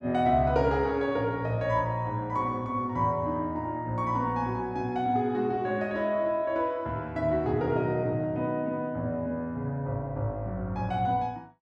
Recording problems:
none

